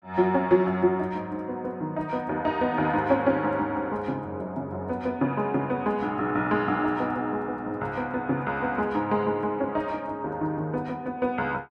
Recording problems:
none

